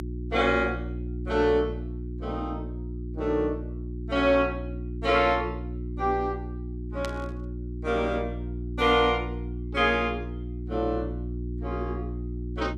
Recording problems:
hum; 60 Hz, harmonics up to 360 Hz, SNR 8 dB
burst of static; at 7 s; peak -6 dB vs average level

